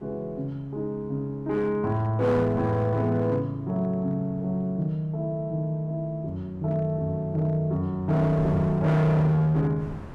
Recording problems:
distortion; hard clipping, signal-to-distortion ratio 12 dB
wind noise; below 360 Hz, SNR 20 dB

